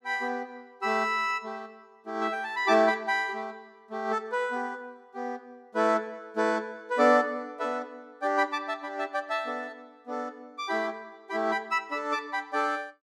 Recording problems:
none

